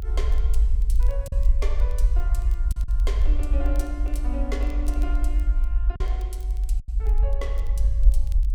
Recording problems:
rumble; below 52 Hz, SNR -13 dB
crackle; vinyl, SNR 20 dB
packet loss; 2% of the sound replaced, filled with silence

